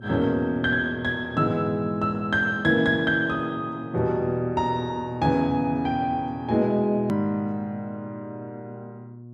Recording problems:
hum; 60 Hz, harmonics up to 600 Hz, SNR 18 dB
click at an edit; at 7 s

